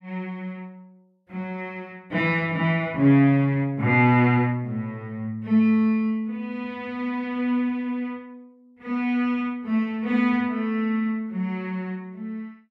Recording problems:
none

